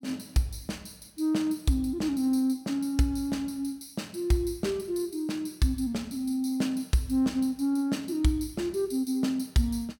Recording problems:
none

